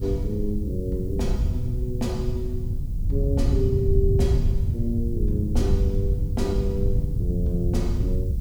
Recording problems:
background hiss; SNR 26 dB
wind noise; below 100 Hz, SNR -3 dB

